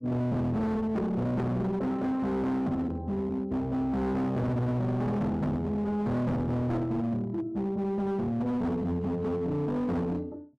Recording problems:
distortion; hard clipping, signal-to-distortion ratio 6 dB

